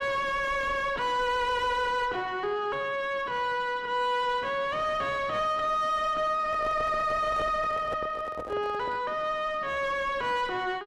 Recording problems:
distortion; soft clipping, signal-to-distortion ratio 3 dB
microphone handling noise; from 6.5 to 9 s; peak -3 dB vs average level

